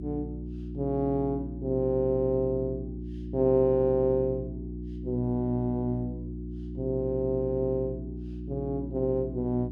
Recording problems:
hum; 60 Hz, harmonics up to 360 Hz, SNR 9 dB

